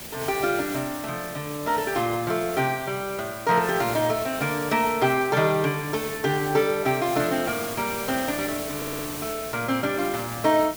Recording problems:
hiss; SNR 10 dB
audio stuttering; at 9 s

